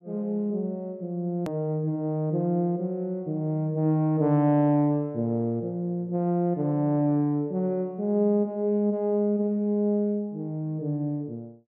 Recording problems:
click at an edit; at 1.5 s

